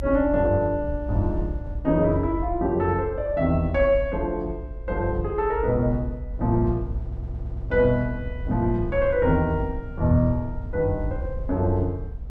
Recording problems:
rumble; below 72 Hz, SNR 9 dB
audio stuttering; at 7 s

